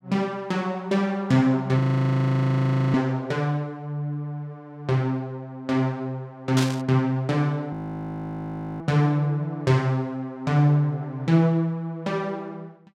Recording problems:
audio freezing; at 2 s for 1 s and at 7.5 s for 1 s
static burst; at 6.5 s; peak 0 dB vs average level

